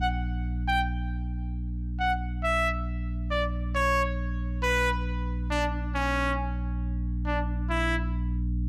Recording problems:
distorted audio; hard clipping, uneven, signal-to-distortion ratio 12 dB
hum; 60 Hz, harmonics up to 300 Hz, SNR 2 dB

